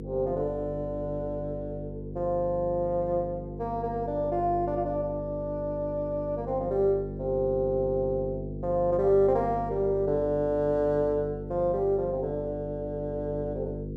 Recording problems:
hum; 50 Hz, harmonics up to 500 Hz, SNR 9 dB

